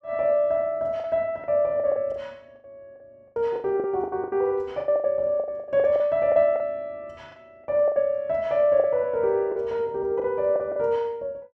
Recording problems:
packet loss; 13% of the sound replaced, filled with the last packet

